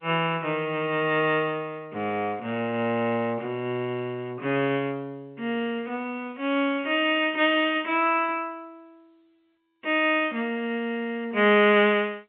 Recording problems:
telephone audio; 170 Hz to 3.3 kHz, G.711

